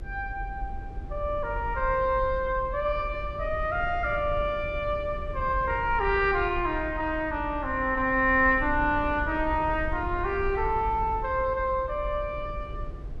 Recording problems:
low-frequency rumble; below 76 Hz, SNR 11 dB

